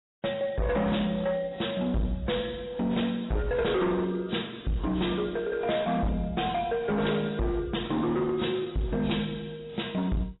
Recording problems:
codec artefacts; AAC, log-spectral distance 4 dB, nothing above 3.8 kHz
distortion; hard clipping, uneven, signal-to-distortion ratio 7 dB

